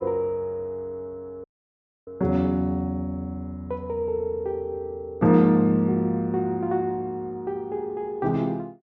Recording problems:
treble cut off; nothing above 8 kHz
dropout; at 1.5 s for 0.5 s

